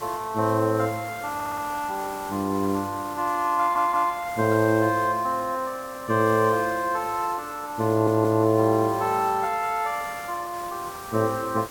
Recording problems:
hiss; SNR 17 dB
stutter; at 1.5 s, at 3.5 s and at 8 s

